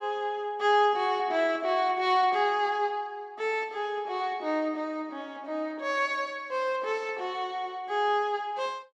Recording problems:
none

